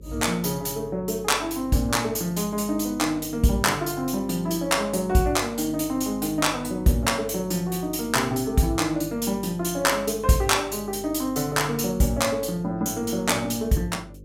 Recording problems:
mains hum; 50 Hz, harmonics up to 550 Hz, SNR 21 dB

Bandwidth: 16 kHz